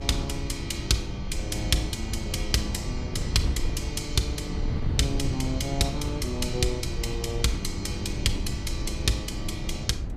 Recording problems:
mains hum; 60 Hz, harmonics up to 540 Hz, SNR 20 dB
wind on the microphone; below 130 Hz, SNR 4 dB

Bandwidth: 15 kHz